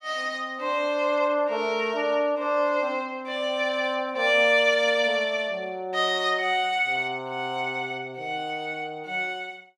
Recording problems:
none

